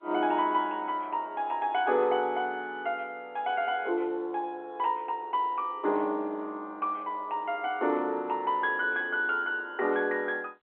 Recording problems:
telephone audio; 260 Hz to 3.7 kHz, G.711

